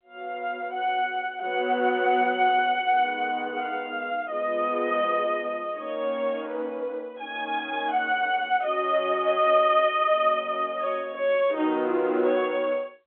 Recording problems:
telephone audio; 260 Hz to 3.6 kHz, G.711

